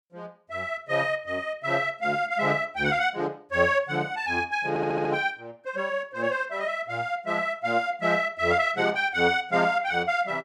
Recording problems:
stutter; at 4.5 s

